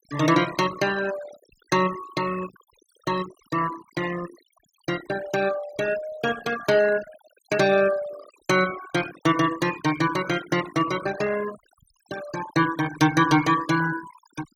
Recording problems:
denoising artefacts; signal-to-artefact ratio 14 dB

